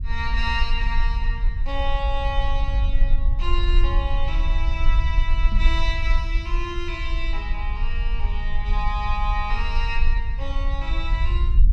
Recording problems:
rumble; below 48 Hz, strongest tone 20 Hz, SNR -5 dB
knock on the microphone; at 5.5 s; peak 0 dB vs average level

